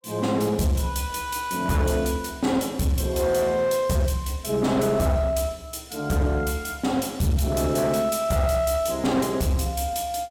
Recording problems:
distortion; hard clipping, uneven, signal-to-distortion ratio 11 dB

